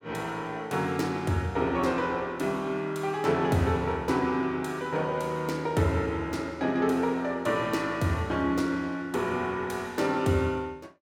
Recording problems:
none

